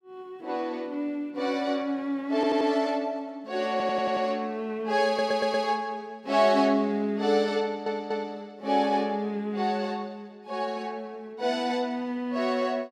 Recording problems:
stutter; 4 times, first at 2.5 s

